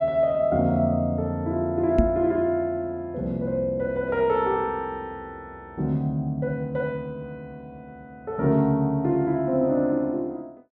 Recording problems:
microphone thump; at 2 s; peak +7 dB vs average level

